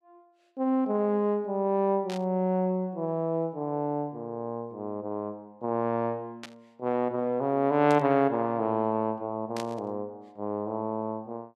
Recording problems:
burst of static; 4 times, first at 2 s; peak -7 dB vs average level

